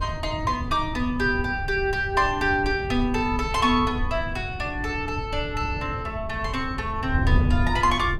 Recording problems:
wind on the microphone; below 110 Hz, SNR 6 dB

